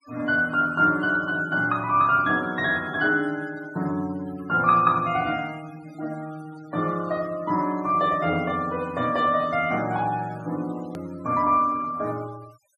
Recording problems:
noise reduction artefacts; signal-to-artefact ratio 22 dB
hard cut with a click; at 11 s

